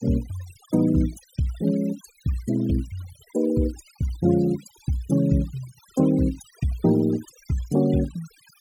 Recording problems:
noise reduction artefacts; signal-to-artefact ratio 20 dB

